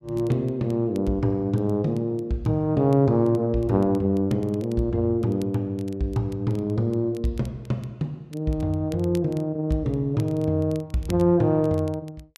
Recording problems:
crackling; vinyl, SNR 28 dB

